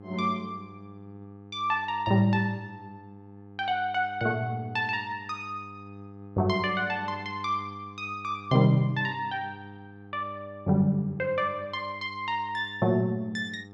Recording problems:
hum; 50 Hz, harmonics up to 1.3 kHz, SNR 18 dB

